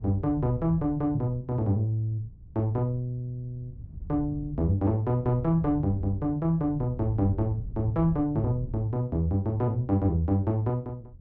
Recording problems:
wind noise; below 110 Hz, SNR 14 dB

